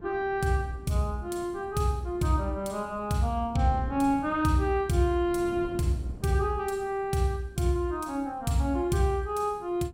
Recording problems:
wind on the microphone; below 270 Hz, SNR 18 dB

